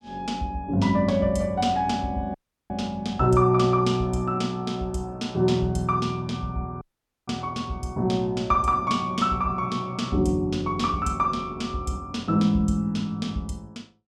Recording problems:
audio cutting out; at 2.5 s and at 7 s

